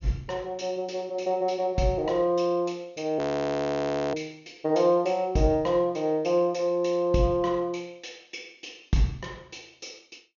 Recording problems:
low-pass filter; nothing above 6.9 kHz
frozen audio; at 3 s for 1 s

